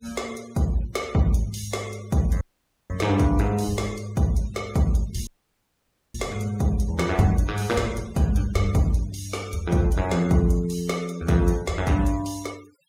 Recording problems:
noise reduction artefacts; signal-to-artefact ratio 21 dB
dropout; at 2.5 s and at 5.5 s for 1 s

